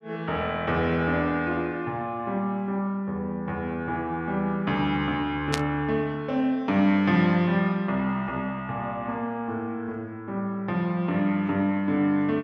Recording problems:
burst of static; at 5.5 s; peak +2 dB vs average level

